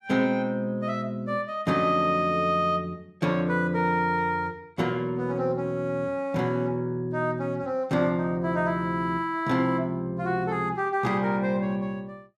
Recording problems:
none

